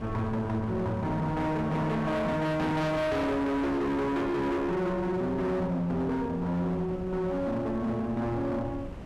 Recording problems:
distortion; hard clipping, signal-to-distortion ratio 6 dB
wind noise; below 460 Hz, SNR 13 dB

